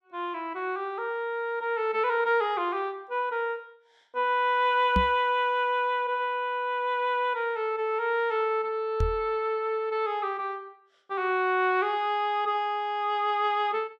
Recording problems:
microphone thump; at 5 s and at 9 s; peak +4 dB vs average level

